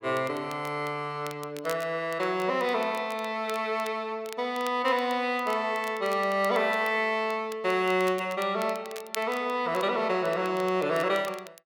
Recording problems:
crackling; vinyl, SNR 19 dB

